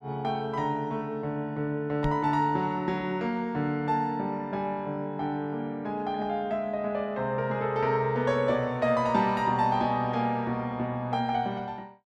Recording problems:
microphone thump; at 2 s; peak +3 dB vs average level

